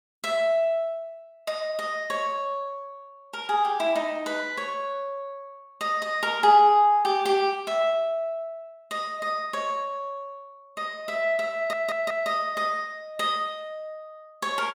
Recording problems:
stutter; at 12 s

